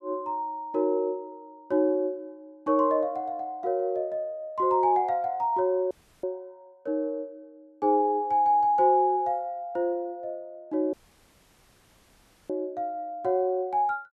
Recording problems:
dropout; at 6 s and at 11 s for 1.5 s

